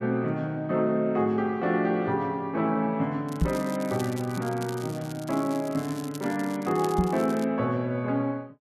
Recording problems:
crackling; from 3.5 to 7.5 s; loose cable, SNR 18 dB
knock on the microphone; at 3.5 s and at 7 s; peak +6 dB vs average level

